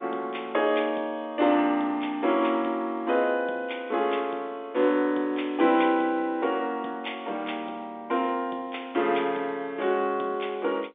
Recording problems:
phone line; 240 Hz to 3.7 kHz, G.711

